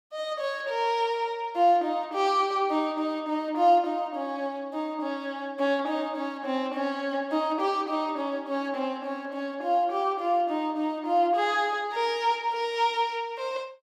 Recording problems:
none

